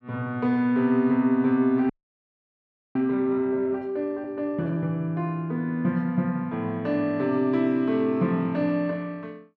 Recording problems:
frozen audio; at 2 s for 1 s

